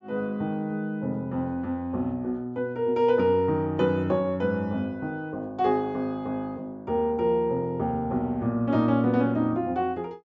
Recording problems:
treble missing; nothing above 8 kHz

